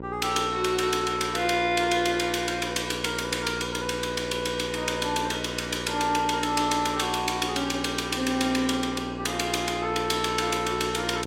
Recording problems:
mains hum; 60 Hz, harmonics up to 1.5 kHz, SNR 11 dB

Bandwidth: 16 kHz